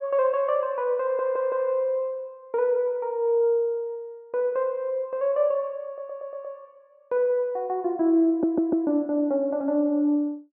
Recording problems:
stutter; at 1 s, at 6 s and at 8.5 s

